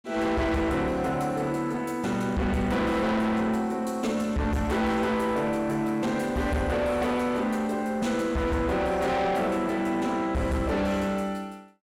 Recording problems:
distorted audio; soft clipping, signal-to-distortion ratio 8 dB

